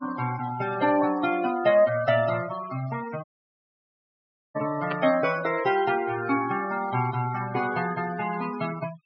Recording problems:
treble cut off; nothing above 5.5 kHz
denoising artefacts; signal-to-artefact ratio 13 dB
dropout; at 3 s for 1.5 s
static burst; at 5 s; peak -5 dB vs average level

